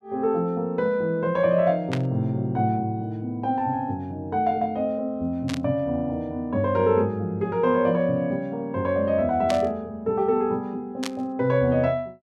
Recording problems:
static burst; 4 times, first at 2 s; peak -3 dB vs average level

